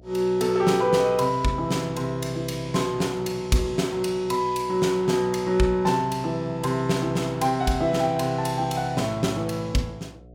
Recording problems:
mains hum; 60 Hz, harmonics up to 720 Hz, SNR 25 dB

